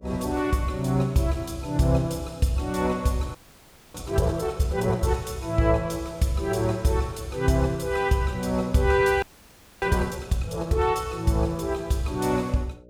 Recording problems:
hum; 60 Hz, harmonics up to 600 Hz, SNR 28 dB
audio freezing; at 3.5 s for 0.5 s and at 9 s for 0.5 s

